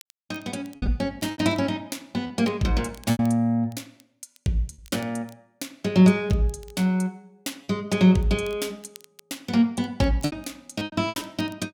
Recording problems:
crackle; vinyl, SNR 28 dB
packet loss; 6% of the sound replaced, filled with repeated pitch periods

